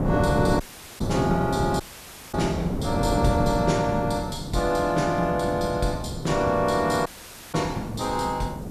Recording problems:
background hiss; slope +1 dB per octave, SNR 29 dB
wind on the microphone; below 350 Hz, SNR 5 dB
audio cutting out; at 0.5 s, at 2 s for 0.5 s and at 7 s

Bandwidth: 14 kHz